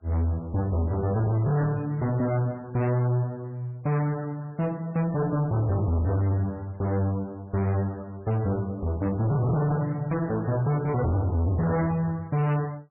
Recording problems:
lossy codec; MP3, log-spectral distance 2 dB, nothing above 2.7 kHz
distorted audio; hard clipping, signal-to-distortion ratio 6 dB

